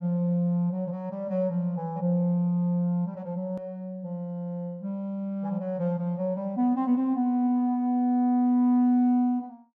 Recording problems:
click at an edit; at 3.5 s

